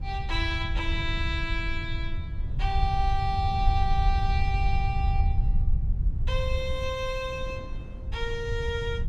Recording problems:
rumble; below 80 Hz, SNR -1 dB
wind noise; below 180 Hz, SNR 13 dB

